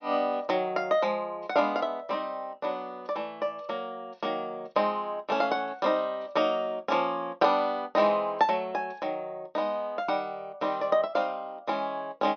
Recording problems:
low-pass filter; nothing above 6.2 kHz

